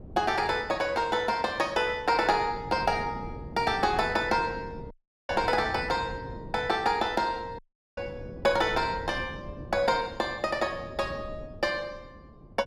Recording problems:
wind noise; below 300 Hz, SNR 15 dB
dropout; at 5 s and at 7.5 s

